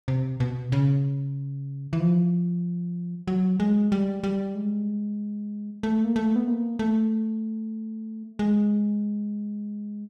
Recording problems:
none

